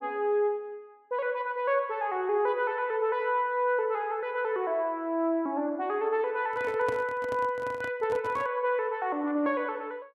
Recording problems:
microphone handling noise; from 6.5 to 8.5 s; peak -4 dB vs average level

